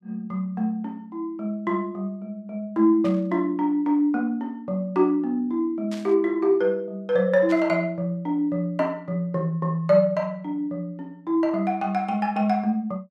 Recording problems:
static burst; at 3 s, at 6 s and at 7.5 s; peak -12 dB vs average level

